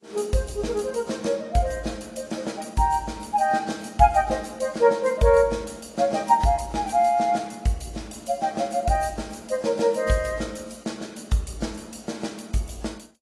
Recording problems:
codec artefacts; AAC, log-spectral distance 5 dB, nothing above 11.3 kHz

